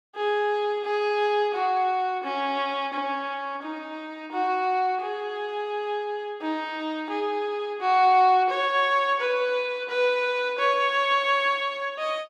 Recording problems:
none

